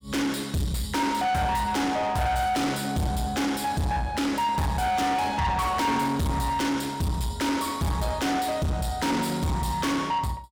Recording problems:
distorted audio; soft clipping, signal-to-distortion ratio 6 dB

